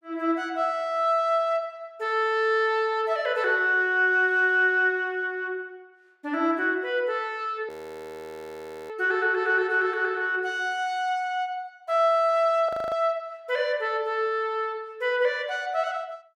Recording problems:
frozen audio; at 7.5 s for 1 s and at 13 s

